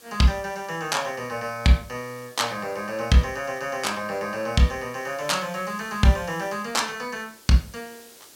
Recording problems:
hiss; SNR 23 dB

